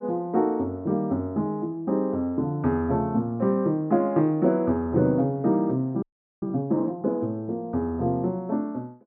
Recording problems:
frozen audio; at 6 s

